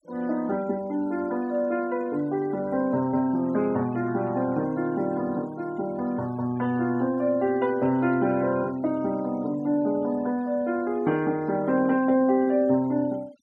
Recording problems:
denoising artefacts; signal-to-artefact ratio 25 dB

